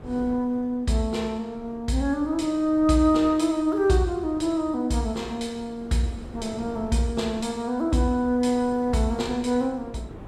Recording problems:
wind noise; below 440 Hz, SNR 19 dB

